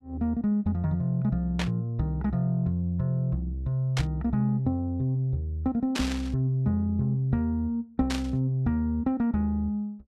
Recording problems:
burst of static; 4 times, first at 1.5 s; peak 0 dB vs average level

